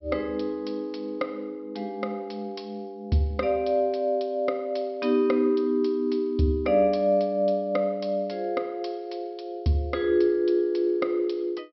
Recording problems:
treble cut off; nothing above 5.6 kHz

